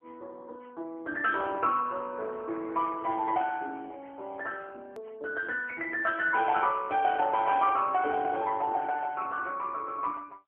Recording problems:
telephone audio; 300 Hz to 3 kHz, AMR-NB
edit click; at 5 s

